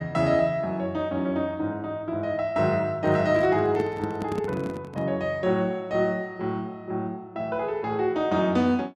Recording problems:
microphone handling noise; from 3 to 5 s; peak -3 dB vs average level

